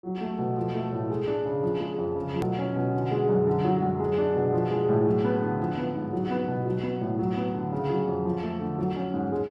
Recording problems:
hard cut with a click; at 2.5 s

